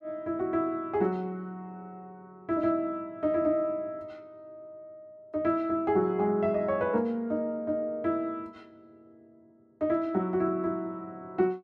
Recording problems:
none

